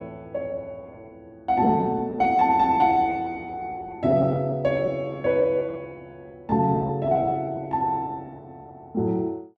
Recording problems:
packet loss; 11% of the sound replaced, filled with repeated pitch periods

